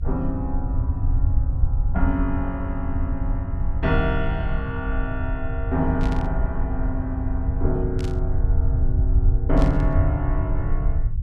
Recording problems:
rumble; below 84 Hz, SNR -3 dB
static burst; at 6 s, at 8 s and at 9.5 s; peak -5 dB vs average level

